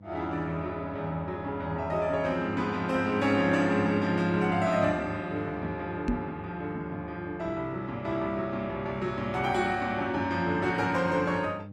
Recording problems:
codec artefacts; Opus, log-spectral distance 2 dB, nothing above 14.6 kHz
hum; 50 Hz, harmonics up to 800 Hz, SNR 18 dB
knock on the microphone; at 6 s; peak +4 dB vs average level

